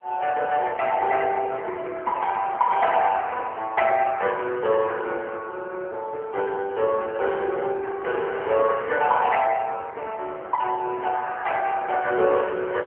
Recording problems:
phone line; 320 Hz to 3.3 kHz, AMR-NB

